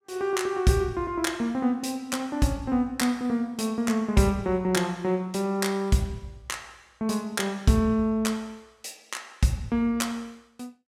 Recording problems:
none

